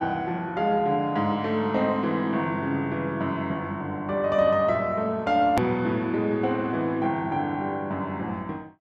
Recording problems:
hard cut with a click; at 5.5 s

